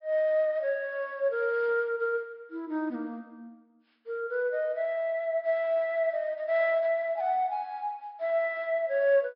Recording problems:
treble missing; nothing above 5.3 kHz

